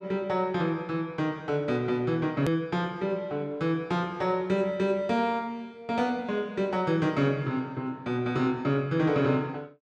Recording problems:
click at an edit; at 2.5 s

